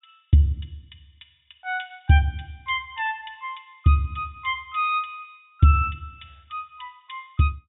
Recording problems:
treble cut off; nothing above 4 kHz

